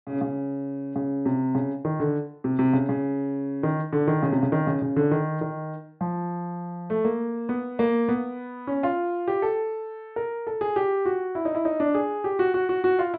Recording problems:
treble missing; nothing above 4.9 kHz

